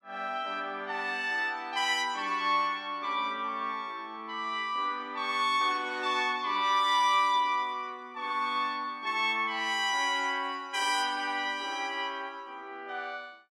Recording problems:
none

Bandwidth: 16 kHz